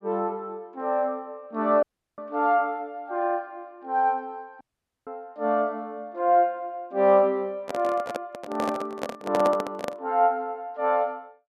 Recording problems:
audio cutting out; at 2 s and at 4.5 s
microphone handling noise; from 7.5 to 10 s; peak 0 dB vs average level

